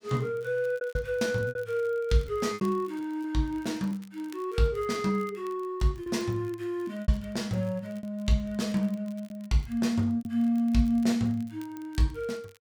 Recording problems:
crackle; vinyl, SNR 28 dB
lost packets; 6% of the sound replaced, filled with repeated pitch periods

